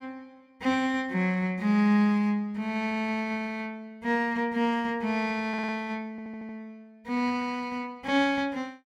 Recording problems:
stutter; at 5.5 s and at 6 s

